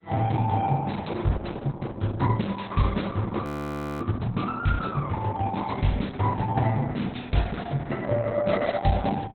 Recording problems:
lossy compression; Opus, log-spectral distance 4 dB
audio freezing; at 3.5 s for 0.5 s

